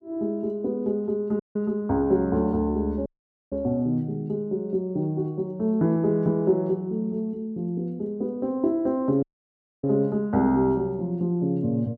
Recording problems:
audio cutting out; at 1.5 s, at 3 s and at 9 s for 0.5 s

